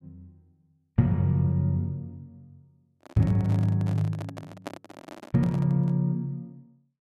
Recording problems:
microphone handling noise; from 3 to 6 s; peak -5 dB vs average level

